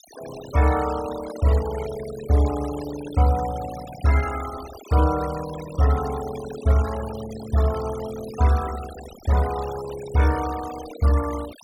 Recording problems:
denoising artefacts; signal-to-artefact ratio 15 dB

